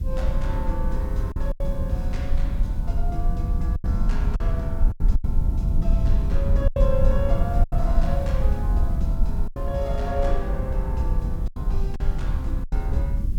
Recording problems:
hiss; slope -1 dB per octave, SNR 23 dB
low-frequency rumble; below 68 Hz, SNR -7 dB
packet loss; 6% of the sound replaced, filled with silence

